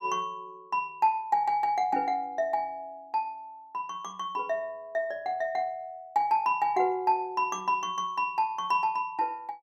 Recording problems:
none

